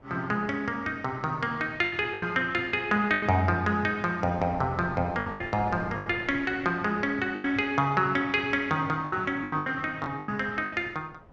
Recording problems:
wind noise; below 810 Hz, SNR 21 dB
lost packets; 9% of the sound replaced, filled with the last packet

